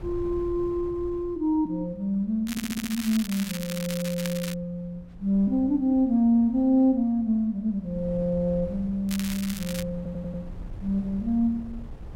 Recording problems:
wind noise; below 120 Hz, SNR 18 dB
crackle; from 2.5 to 4.5 s and at 9 s; loose cable, SNR 10 dB
stutter; at 2.5 s and at 10 s

